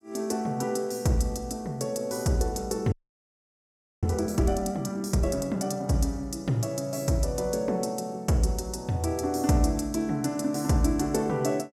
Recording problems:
audio freezing; at 3 s for 1 s

